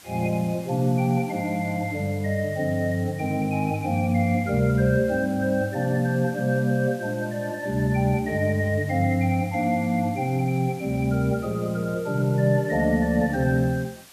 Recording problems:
hiss; slope 0 dB per octave, SNR 23 dB

